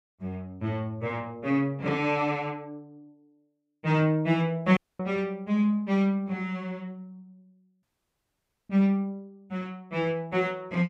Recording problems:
dropout; at 5 s and at 8 s for 1 s

